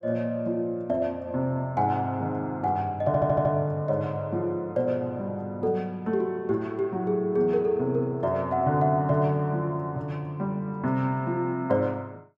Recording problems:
stutter; at 3 s

